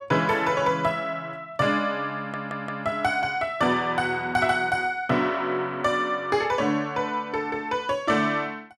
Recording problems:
audio stuttering; at 2 s

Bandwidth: 14.5 kHz